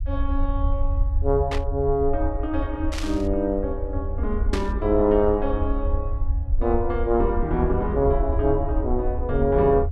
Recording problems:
low-frequency rumble; below 72 Hz, SNR 4 dB
static burst; at 1.5 s, at 3 s and at 4.5 s; peak -3 dB vs average level

